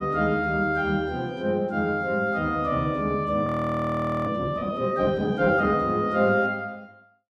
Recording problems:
audio freezing; at 3.5 s for 1 s

